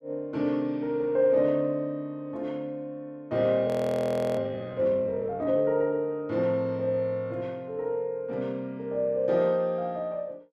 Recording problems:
audio freezing; at 3.5 s for 0.5 s

